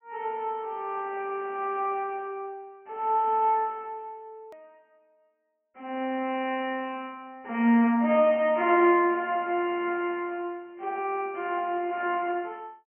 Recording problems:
treble missing; nothing above 3.1 kHz
edit click; at 4.5 s

